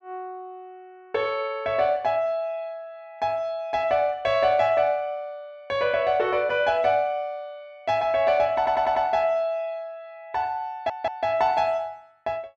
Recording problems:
stutter; at 8.5 s and at 11 s

